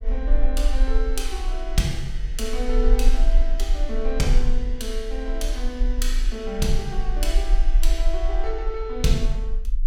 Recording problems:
rumble; below 38 Hz, strongest tone 18 Hz, SNR -3 dB

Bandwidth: 16.5 kHz